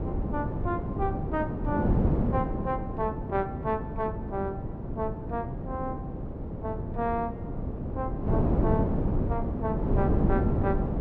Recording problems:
wind on the microphone; below 300 Hz, SNR -3 dB

